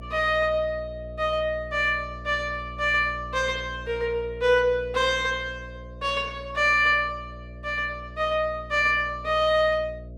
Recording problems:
electrical hum; 60 Hz, harmonics up to 660 Hz, SNR 17 dB

